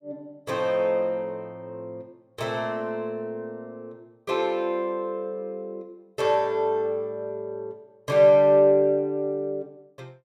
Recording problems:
none

